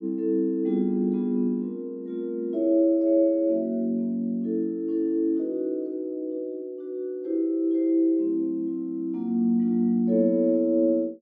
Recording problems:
none

